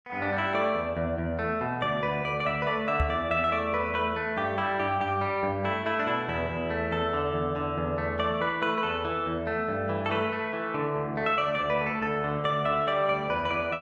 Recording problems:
knock on the microphone; at 3 s; peak +3 dB vs average level

